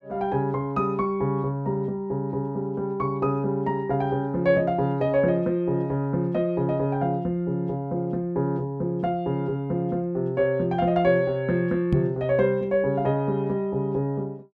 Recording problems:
knock on the microphone; at 12 s; peak +6 dB vs average level

